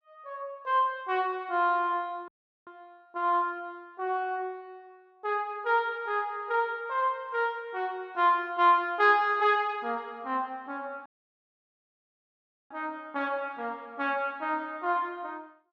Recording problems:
dropout; at 2.5 s and at 11 s for 1.5 s

